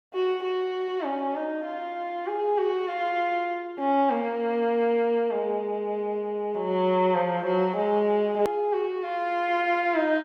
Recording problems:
click at an edit; at 8.5 s

